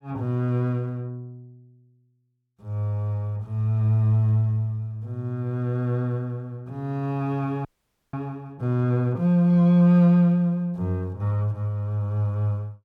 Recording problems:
frozen audio; at 7.5 s

